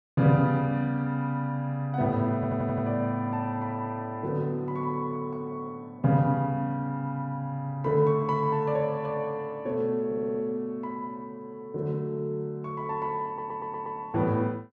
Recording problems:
audio stuttering; at 2.5 s, at 10 s and at 13 s

